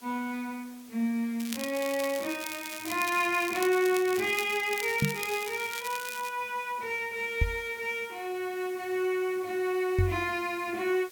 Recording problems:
background hiss; slope -1 dB per octave, SNR 21 dB
crackling; from 1.5 to 3.5 s and from 3.5 to 6.5 s; loose cable, SNR 9 dB
microphone bump; at 5 s, at 7.5 s and at 10 s; peak +6 dB vs average level

